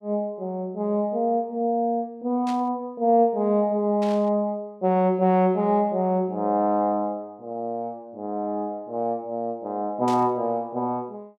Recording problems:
static burst; at 2.5 s, at 4 s and at 10 s; peak -10 dB vs average level

